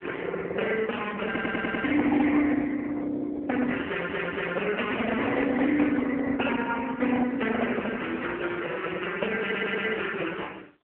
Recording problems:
telephone audio; 320 Hz to 3.2 kHz, AMR-NB
distortion; soft clipping, signal-to-distortion ratio 16 dB
stutter; at 1.5 s, at 4 s and at 9.5 s

